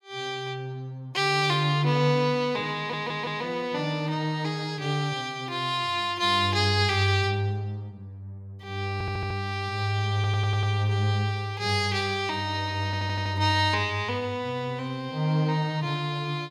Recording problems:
stutter; 4 times, first at 3 s

